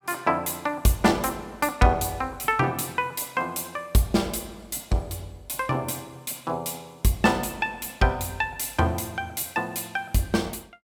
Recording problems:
none

